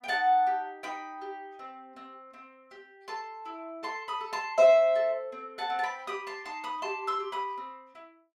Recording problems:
none

